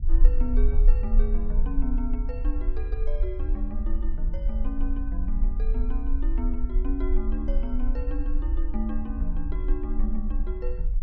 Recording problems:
rumble; below 42 Hz, strongest tone 24 Hz, SNR -7 dB

